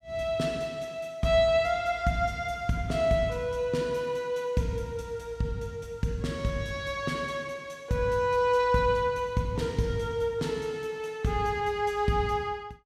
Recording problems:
none

